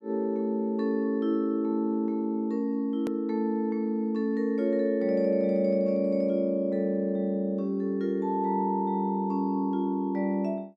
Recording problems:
hard cut with a click; at 3 s

